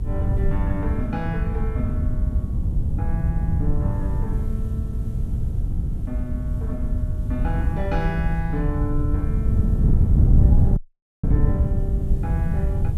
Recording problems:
hiss; slope -3 dB per octave, SNR 27 dB
rumble; below 76 Hz, strongest tone 56 Hz, SNR 1 dB
wind on the microphone; below 120 Hz, SNR -8 dB
dropout; at 11 s

